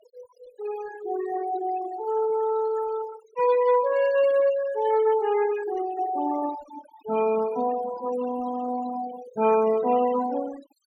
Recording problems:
noise reduction artefacts; signal-to-artefact ratio 15 dB

